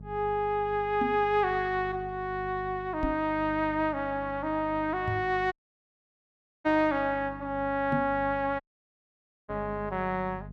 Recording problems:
hum; 50 Hz, harmonics up to 450 Hz, SNR 16 dB
microphone bump; 4 times, first at 1 s; peak +2 dB vs average level
audio cutting out; at 5.5 s for 1 s and at 8.5 s for 1 s

